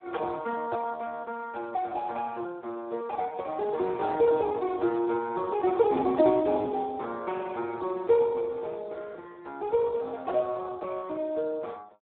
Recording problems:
phone line; 280 Hz to 2.2 kHz, Speex

